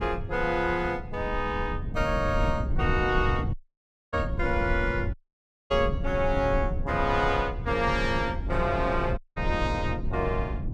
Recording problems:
low-frequency rumble; below 120 Hz, SNR 5 dB
audio cutting out; at 3.5 s for 0.5 s, at 5 s for 0.5 s and at 9 s

